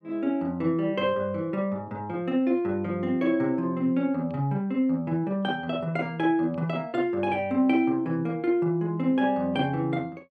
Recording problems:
none

